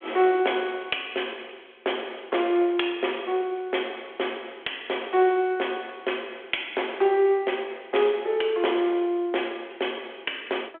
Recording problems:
phone line; 300 Hz to 3.4 kHz, G.726

